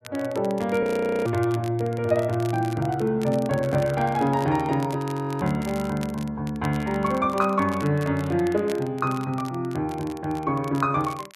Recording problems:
crackling; vinyl, SNR 20 dB
frozen audio; at 1 s and at 5 s

